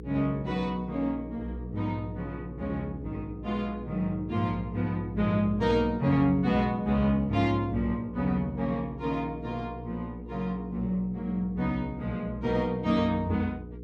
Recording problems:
hum; 60 Hz, harmonics up to 480 Hz, SNR 13 dB

